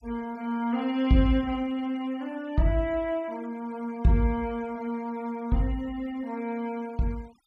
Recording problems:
denoising artefacts; signal-to-artefact ratio 25 dB

